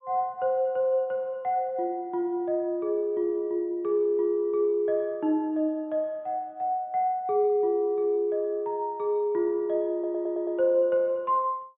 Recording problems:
low-pass filter; nothing above 4 kHz
stutter; at 10 s

